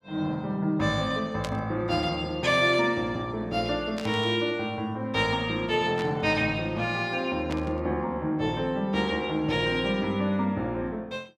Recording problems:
burst of static; 4 times, first at 1.5 s; peak -5 dB vs average level

